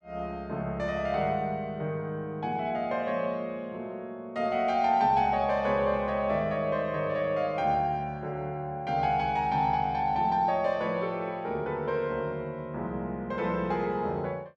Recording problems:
none

